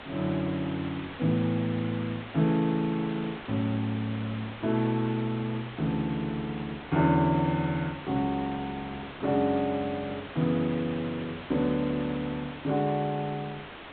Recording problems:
treble cut off; nothing above 4 kHz
background hiss; SNR 13 dB

